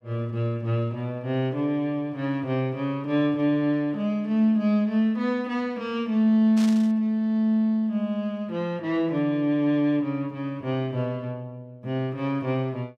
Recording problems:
burst of static; at 6.5 s; peak -9 dB vs average level

